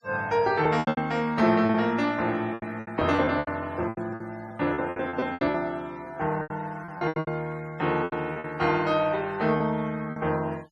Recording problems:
noise reduction artefacts; signal-to-artefact ratio 25 dB
lost packets; 14% of the sound replaced, filled with repeated pitch periods

